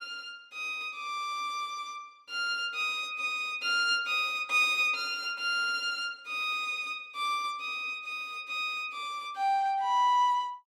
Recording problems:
none

